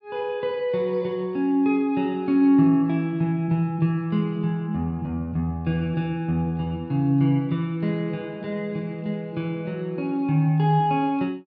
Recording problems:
none

